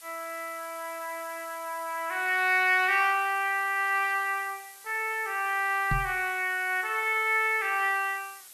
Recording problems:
hiss; slope +2 dB per octave, SNR 19 dB
microphone bump; at 6 s; peak 0 dB vs average level

